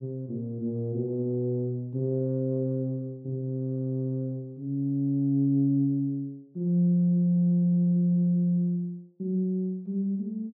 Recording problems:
none

